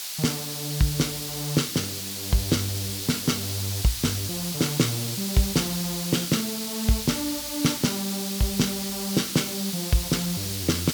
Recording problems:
background hiss; slope +5 dB per octave, SNR 3 dB

